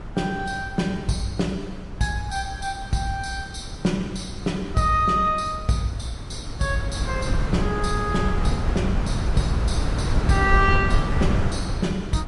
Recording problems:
lossy compression; MP3, log-spectral distance 2 dB, nothing above 10.7 kHz
wind on the microphone; below 170 Hz, SNR 2 dB

